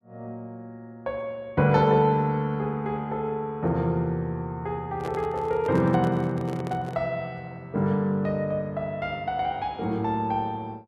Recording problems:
microphone handling noise; from 5 to 7 s; peak -4 dB vs average level

